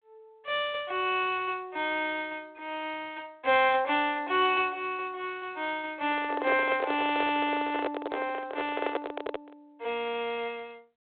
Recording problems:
phone line; 320 Hz to 3.7 kHz, G.726
handling noise; from 6 to 9.5 s; peak +3 dB vs average level

